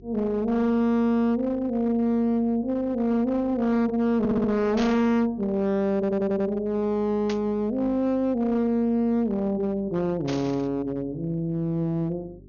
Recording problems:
low-pass filter; nothing above 6.7 kHz
distortion; hard clipping, uneven, signal-to-distortion ratio 11 dB
mains hum; 50 Hz, harmonics up to 400 Hz, SNR 24 dB
stutter; at 4 s and at 6 s
burst of static; at 5 s, at 7.5 s and at 10 s; peak -7 dB vs average level

